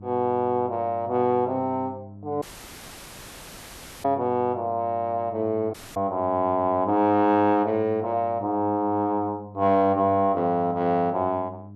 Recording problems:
hum; 50 Hz, harmonics up to 400 Hz, SNR 19 dB
audio cutting out; at 2.5 s for 1.5 s and at 5.5 s

